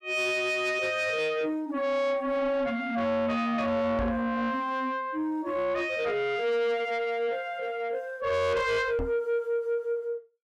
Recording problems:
distortion; soft clipping, signal-to-distortion ratio 10 dB
microphone thump; at 4 s and at 9 s; peak 0 dB vs average level

